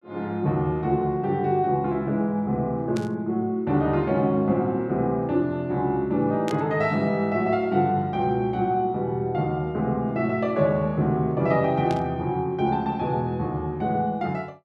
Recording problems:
burst of static; at 3 s, at 6.5 s and at 12 s; peak -8 dB vs average level

